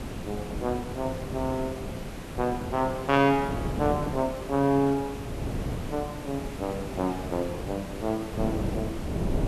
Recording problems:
background hiss; slope -4 dB per octave, SNR 13 dB
wind on the microphone; below 350 Hz, SNR 7 dB

